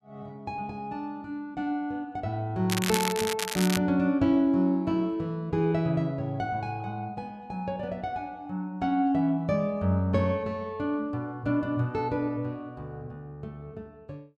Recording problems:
crackling; from 2.5 to 4 s; loose cable, SNR 3 dB

